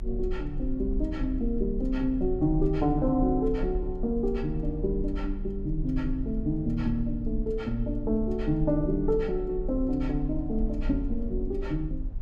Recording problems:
low-frequency rumble; below 42 Hz, strongest tone 28 Hz, SNR 7 dB

